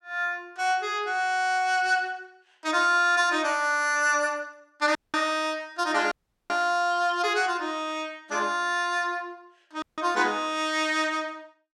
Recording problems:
dropout; at 5 s, at 6 s and at 10 s

